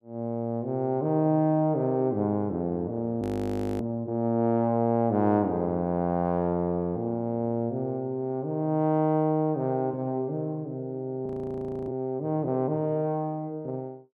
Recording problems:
frozen audio; at 3 s for 0.5 s and at 11 s for 0.5 s

